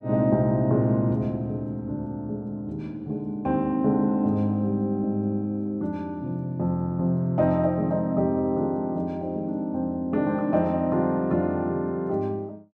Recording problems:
none

